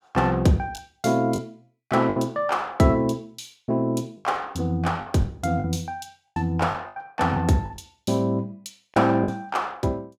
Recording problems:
lost packets; 6% of the sound replaced, filled with the last packet

